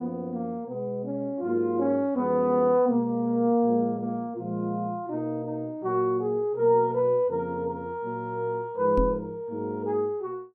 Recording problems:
knock on the microphone; at 9 s; peak +2 dB vs average level

